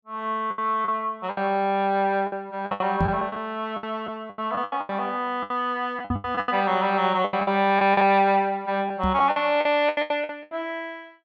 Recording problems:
lost packets; 15% of the sound replaced, filled with the last packet
microphone thump; at 3 s, at 6 s and at 9 s; peak +3 dB vs average level

